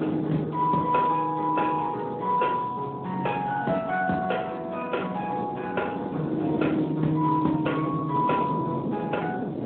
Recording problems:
telephone audio; 190 Hz to 3.3 kHz, Speex
wind noise; below 460 Hz, SNR 8 dB

